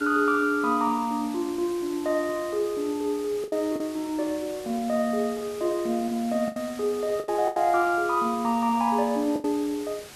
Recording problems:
background hiss; slope -2 dB per octave, SNR 17 dB
lost packets; 4% of the sound replaced, filled with the last packet

